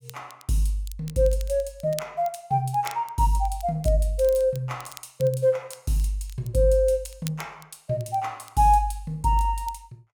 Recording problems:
crackle; vinyl, SNR 21 dB

